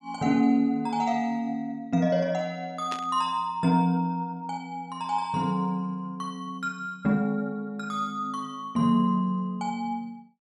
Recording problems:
burst of static; at 3 s; peak -5 dB vs average level

